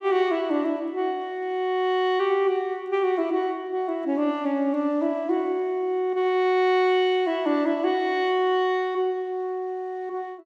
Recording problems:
none

